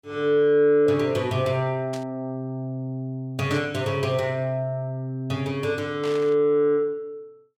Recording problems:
static burst; at 2 s, at 3.5 s and at 6 s; peak -10 dB vs average level

